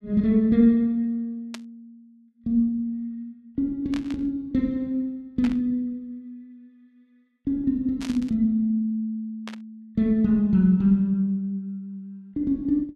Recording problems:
static burst; 5 times, first at 1.5 s; peak -9 dB vs average level

